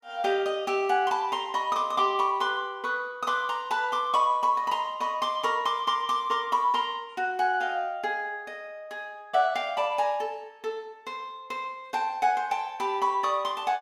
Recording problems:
none

